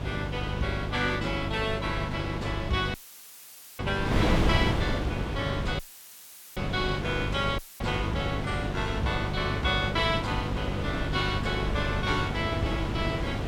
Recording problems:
electrical hum; 50 Hz, harmonics up to 650 Hz, SNR 5 dB
wind on the microphone; below 590 Hz, SNR 2 dB
dropout; at 3 s for 1 s, at 6 s for 1 s and at 7.5 s; filled with static

